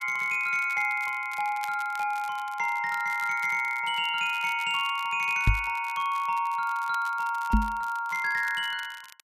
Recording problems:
crackling; vinyl, SNR 21 dB
knock on the microphone; at 5.5 s and at 7.5 s; peak +7 dB vs average level

